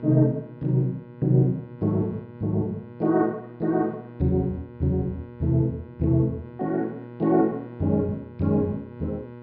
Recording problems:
treble missing; nothing above 5.3 kHz
hum; 60 Hz, harmonics up to 2 kHz, SNR 17 dB

